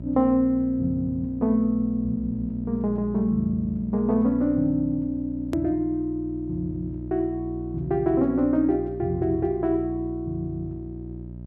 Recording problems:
mains hum; 60 Hz, harmonics up to 660 Hz, SNR 12 dB
hard cut with a click; at 5.5 s

